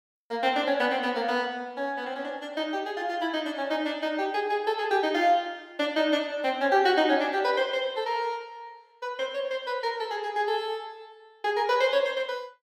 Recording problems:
none

